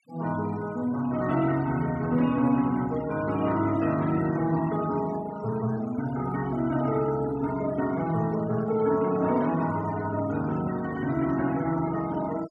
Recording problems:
noise reduction artefacts; signal-to-artefact ratio 18 dB

